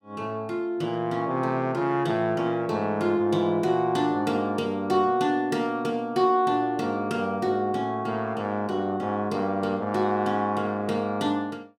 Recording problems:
none

